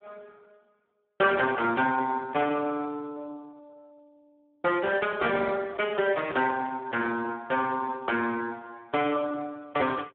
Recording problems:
telephone audio; 260 Hz to 2.3 kHz, Speex

